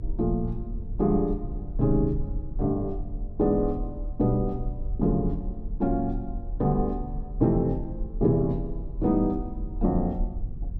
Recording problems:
rumble; below 48 Hz, strongest tone 36 Hz, SNR 8 dB

